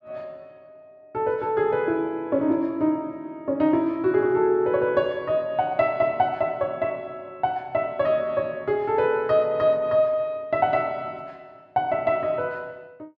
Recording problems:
none

